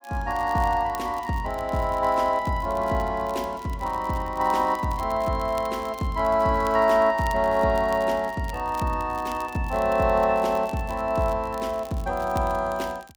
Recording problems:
crackling; vinyl, SNR 24 dB

